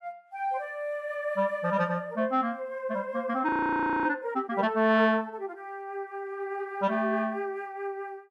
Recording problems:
frozen audio; at 3.5 s for 0.5 s

